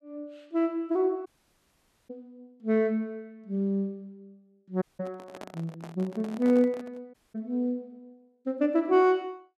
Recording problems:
audio cutting out; at 1.5 s for 1 s, at 5 s and at 7 s
microphone handling noise; from 5 to 7 s; peak -10 dB vs average level

